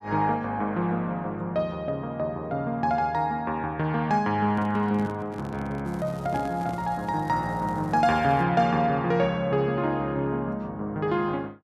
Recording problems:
handling noise; from 4.5 to 7 s; peak -3 dB vs average level
crackle; from 6 to 8.5 s; loose cable, SNR 29 dB

